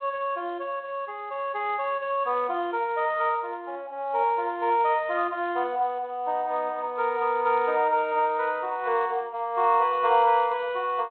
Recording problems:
telephone audio; 370 Hz to 3.2 kHz, G.726

